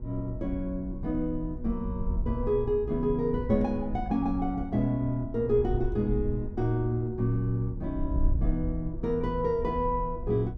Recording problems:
electrical hum; 60 Hz, harmonics up to 960 Hz, SNR 19 dB
wind noise; below 64 Hz, SNR 7 dB

